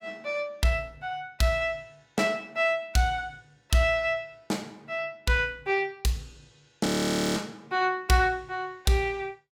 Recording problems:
frozen audio; at 7 s for 0.5 s

